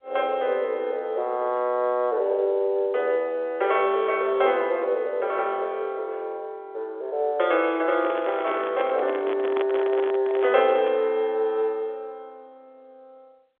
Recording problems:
telephone audio; 340 Hz to 3.6 kHz, G.711
microphone handling noise; from 8 to 11 s; peak -3 dB vs average level

